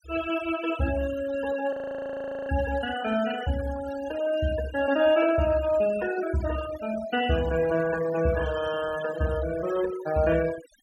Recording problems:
denoising artefacts; signal-to-artefact ratio 13 dB
audio freezing; at 1.5 s for 1 s

